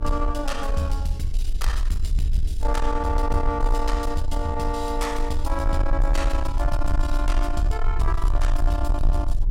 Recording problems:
distorted audio; soft clipping, signal-to-distortion ratio 11 dB
hum; 60 Hz, harmonics up to 420 Hz, SNR 18 dB
rumble; below 48 Hz, SNR 0 dB

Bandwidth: 16 kHz